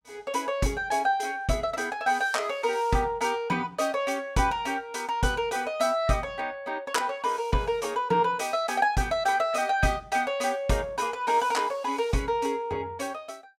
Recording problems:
none

